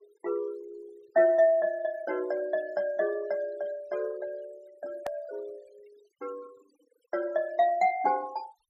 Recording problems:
noise reduction artefacts; signal-to-artefact ratio 26 dB
hard cut with a click; at 5 s

